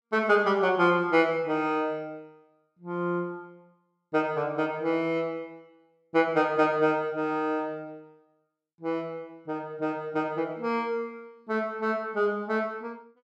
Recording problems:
none

